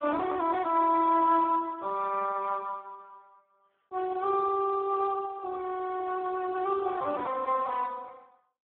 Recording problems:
telephone audio; 260 Hz to 2.6 kHz, Speex

